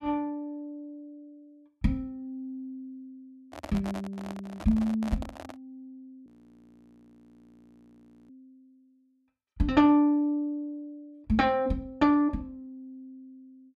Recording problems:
microphone handling noise; from 3.5 to 5.5 s; peak -7 dB vs average level
audio freezing; at 6.5 s for 2 s

